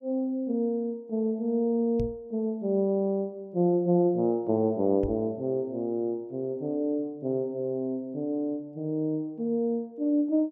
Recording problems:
knock on the microphone; at 2 s and at 5 s; peak -1 dB vs average level

